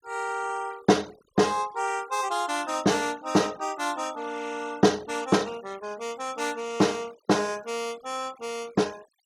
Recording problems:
denoising artefacts; signal-to-artefact ratio 21 dB

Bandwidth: 17 kHz